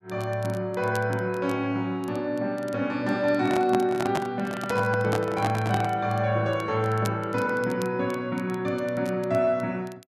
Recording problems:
crackling; vinyl, SNR 24 dB
handling noise; from 3.5 to 6 s; peak +2 dB vs average level

